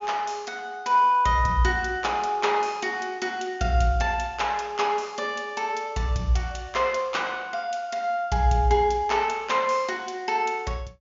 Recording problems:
treble missing; nothing above 7.1 kHz

